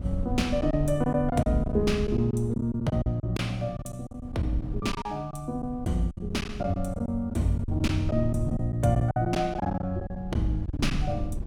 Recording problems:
wind on the microphone; below 110 Hz, SNR 9 dB
packet loss; 12% of the sound replaced, filled with silence

